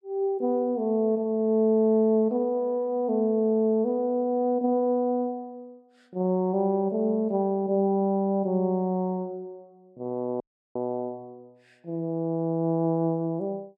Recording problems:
audio cutting out; at 10 s

